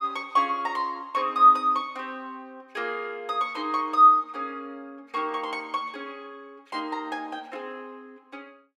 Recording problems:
none

